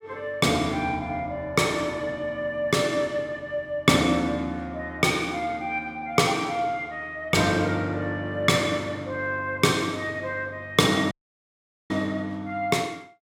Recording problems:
dropout; at 11 s for 1 s

